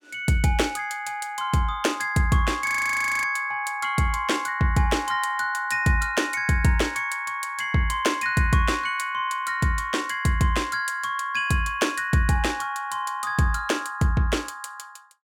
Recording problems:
frozen audio; at 2.5 s for 0.5 s

